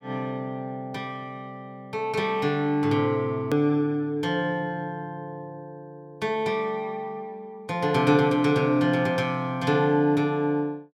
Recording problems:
edit click; at 3.5 s

